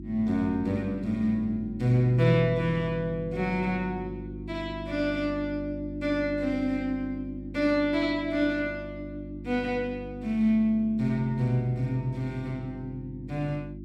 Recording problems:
hum; 50 Hz, harmonics up to 350 Hz, SNR 11 dB

